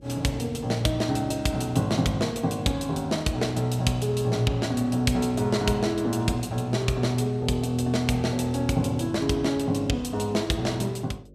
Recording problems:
electrical hum; 50 Hz, harmonics up to 600 Hz, SNR 26 dB

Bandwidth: 15 kHz